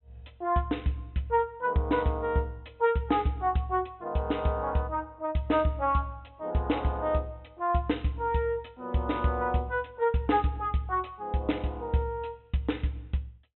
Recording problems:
low-pass filter; nothing above 3.8 kHz

